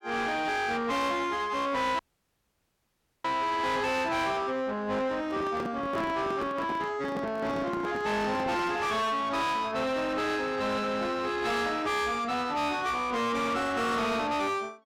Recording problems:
distorted audio; soft clipping, signal-to-distortion ratio 6 dB
audio cutting out; at 2 s for 1.5 s
handling noise; from 5.5 to 9 s; peak -1 dB vs average level

